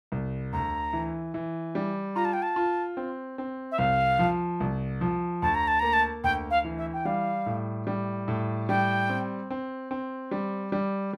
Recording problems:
none

